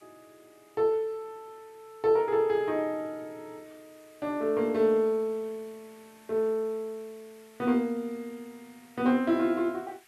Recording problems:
background hiss; SNR 30 dB

